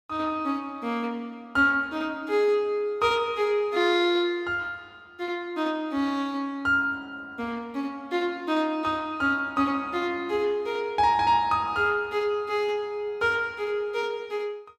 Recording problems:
none

